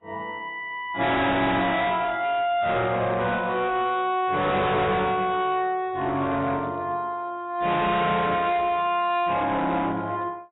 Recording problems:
codec artefacts; AAC, log-spectral distance 3 dB, nothing above 3.8 kHz
distortion; hard clipping, signal-to-distortion ratio 7 dB

